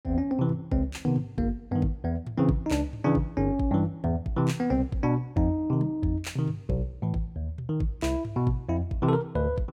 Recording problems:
none

